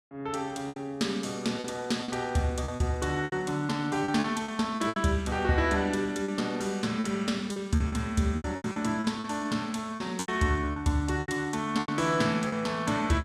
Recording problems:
lost packets; 11% of the sound replaced, filled with repeated pitch periods

